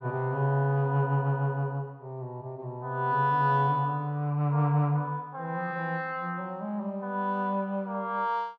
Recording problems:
none

